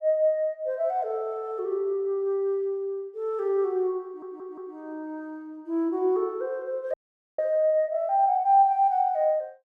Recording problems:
stutter; at 4 s
frozen audio; at 7 s

